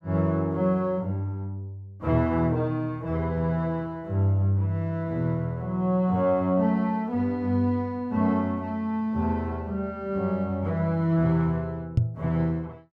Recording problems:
knock on the microphone; at 12 s; peak +8 dB vs average level

